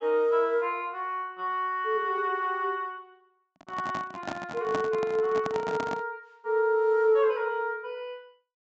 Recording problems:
treble cut off; nothing above 8 kHz
handling noise; from 3.5 to 6 s; peak -1 dB vs average level

